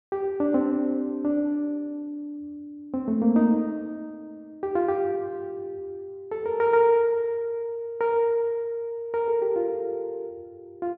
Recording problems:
none

